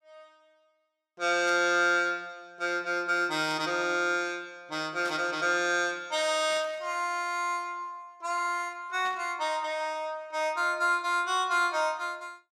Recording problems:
burst of static; 5 times, first at 1.5 s; peak -10 dB vs average level

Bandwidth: 16 kHz